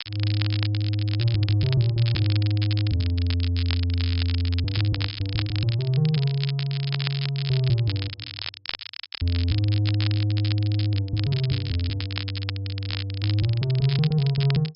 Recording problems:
low-pass filter; nothing above 5.5 kHz
crackle; vinyl, SNR 10 dB

